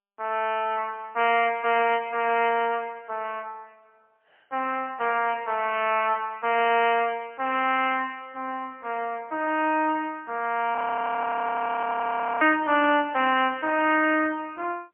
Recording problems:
telephone audio; 260 Hz to 3.1 kHz, AMR-NB, then MP3
frozen audio; at 11 s for 1.5 s

